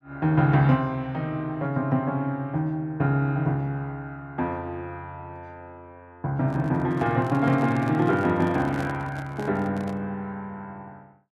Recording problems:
microphone handling noise; from 6.5 to 10 s; peak -6 dB vs average level

